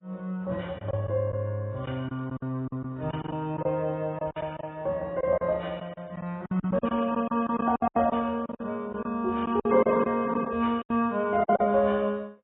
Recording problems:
codec artefacts; AAC, log-spectral distance 2 dB
lost packets; 11% of the sound replaced, filled with silence

